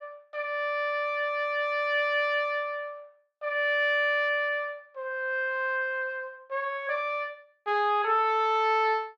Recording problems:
none

